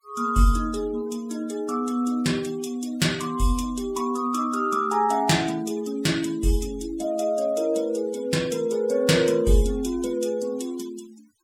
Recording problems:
denoising artefacts; signal-to-artefact ratio 19 dB

